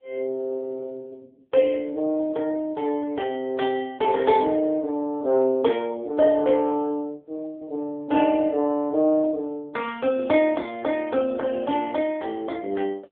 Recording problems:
telephone audio; 220 Hz to 3.4 kHz, AMR-NB

